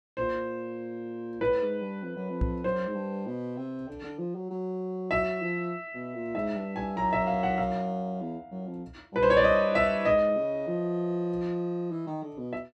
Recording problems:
knock on the microphone; at 2.5 s; peak +5 dB vs average level

